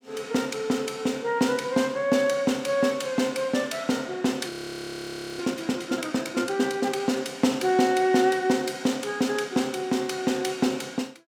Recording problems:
frozen audio; at 4.5 s for 1 s

